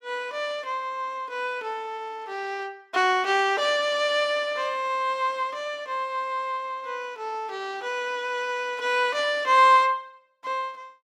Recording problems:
none

